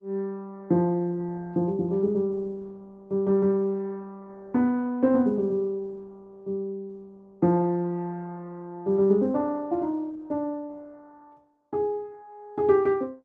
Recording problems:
codec artefacts; Opus, log-spectral distance 2 dB

